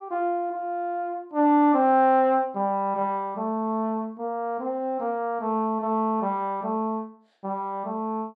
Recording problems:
none

